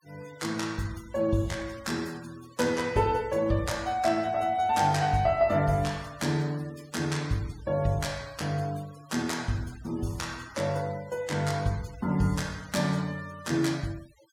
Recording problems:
noise reduction artefacts; signal-to-artefact ratio 21 dB

